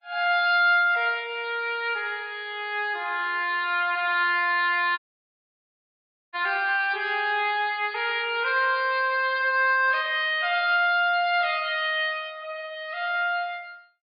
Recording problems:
codec artefacts; MP3, log-spectral distance 2 dB, nothing above 4.4 kHz
audio cutting out; at 5 s for 1.5 s

